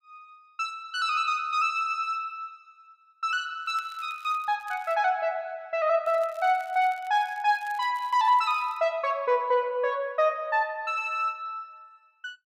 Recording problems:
crackle; from 3.5 to 5 s and from 6 to 9 s; loose cable, SNR 28 dB

